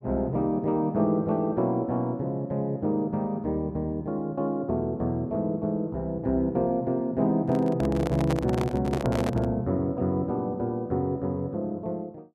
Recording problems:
handling noise; from 7.5 to 9.5 s; peak 0 dB vs average level

